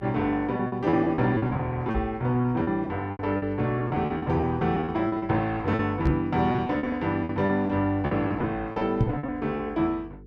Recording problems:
hum; 50 Hz, harmonics up to 450 Hz, SNR 22 dB
lost packets; 14% of the sound replaced, filled with repeated pitch periods
microphone thump; at 2 s, at 6 s and at 9 s; peak +6 dB vs average level

